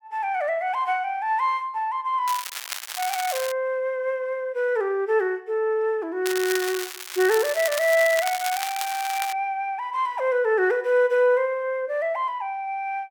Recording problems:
crackling; from 2.5 to 3.5 s and from 6.5 to 9.5 s; loose cable, SNR 7 dB

